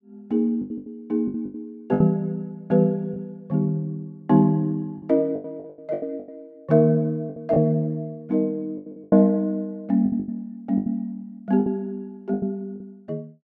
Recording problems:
packet loss; 11% of the sound replaced, filled with the last packet

